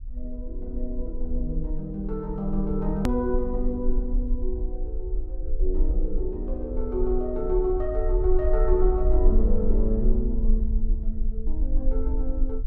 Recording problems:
low-frequency rumble; below 44 Hz, strongest tone 20 Hz, SNR 0 dB
hard cut with a click; at 3 s

